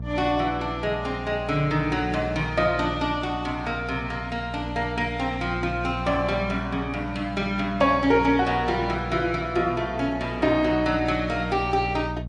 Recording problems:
codec artefacts; MP3, log-spectral distance 2 dB
hum; 60 Hz, harmonics up to 480 Hz, SNR 10 dB

